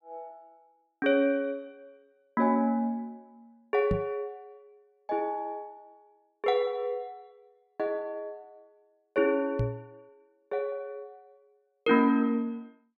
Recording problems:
microphone thump; at 4 s and at 9.5 s; peak +3 dB vs average level

